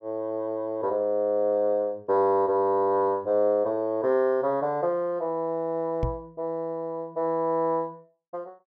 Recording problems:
microphone thump; at 6 s; peak +1 dB vs average level

